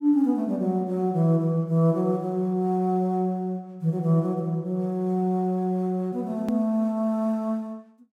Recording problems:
hard cut with a click; at 6.5 s

